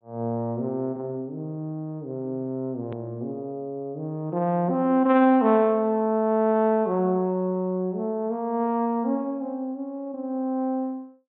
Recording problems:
low-pass filter; nothing above 4 kHz
click at an edit; at 3 s

